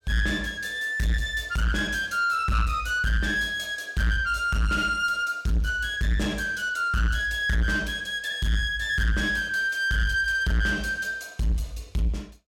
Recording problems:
distorted audio; soft clipping, signal-to-distortion ratio 8 dB

